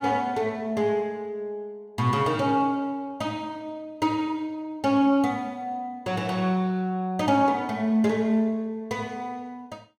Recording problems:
none

